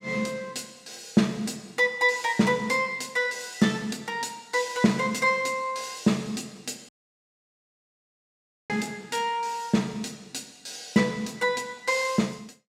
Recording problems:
dropout; at 7 s for 2 s

